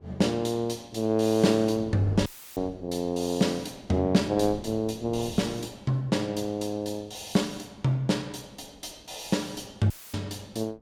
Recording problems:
wind noise; below 380 Hz, SNR 20 dB
dropout; at 2.5 s and at 10 s; filled with static

